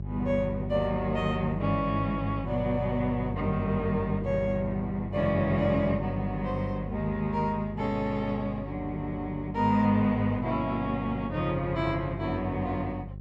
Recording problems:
hum; 50 Hz, harmonics up to 550 Hz, SNR 9 dB

